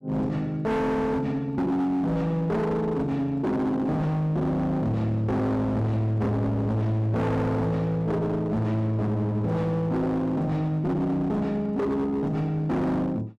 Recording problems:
distorted audio; hard clipping, signal-to-distortion ratio 8 dB

